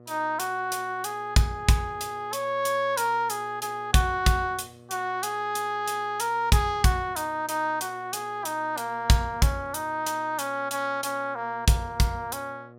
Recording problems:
hum; 60 Hz, harmonics up to 1.3 kHz, SNR 24 dB

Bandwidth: 16 kHz